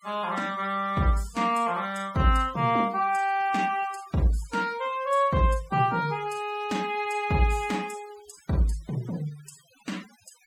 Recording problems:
denoising artefacts; signal-to-artefact ratio 22 dB

